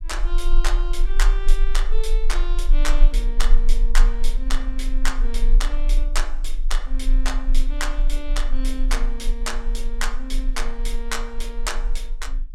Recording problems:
rumble; below 32 Hz, strongest tone 22 Hz, SNR -6 dB

